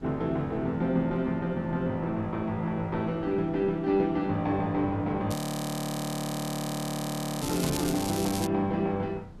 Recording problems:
wind noise; below 200 Hz, SNR 19 dB
crackle; from 5.5 to 8.5 s; loose cable, SNR 8 dB
audio freezing; at 5.5 s for 2 s

